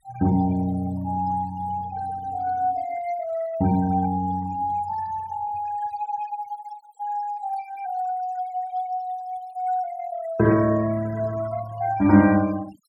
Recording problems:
denoising artefacts; signal-to-artefact ratio 19 dB

